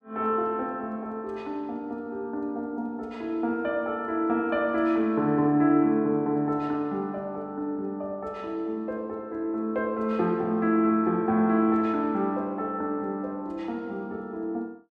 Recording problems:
none

